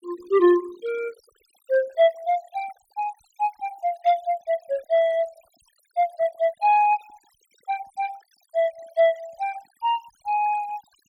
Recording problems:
noise reduction artefacts; signal-to-artefact ratio 23 dB

